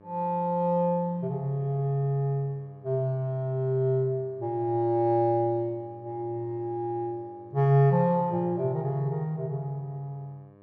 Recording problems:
hum; 50 Hz, harmonics up to 1.8 kHz, SNR 27 dB

